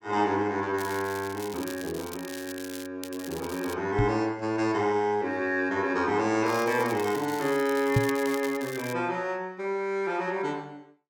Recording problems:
crackle; from 1 to 3 s, at 3 s and from 6.5 to 9 s; loose cable, SNR 14 dB
knock on the microphone; at 4 s and at 8 s; peak +8 dB vs average level

